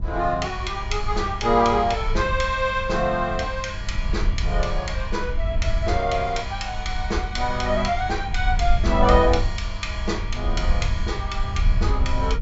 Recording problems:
treble cut off; nothing above 8 kHz
hum; 50 Hz, harmonics up to 600 Hz, SNR 16 dB
wind on the microphone; below 64 Hz, SNR 4 dB

